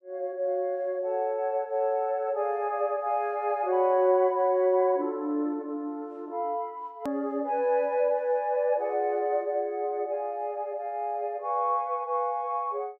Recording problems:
hard cut with a click; at 7 s

